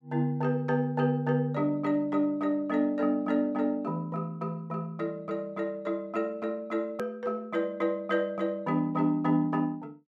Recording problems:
click at an edit; at 7 s

